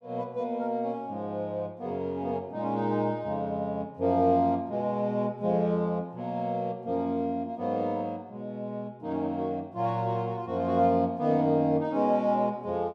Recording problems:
none

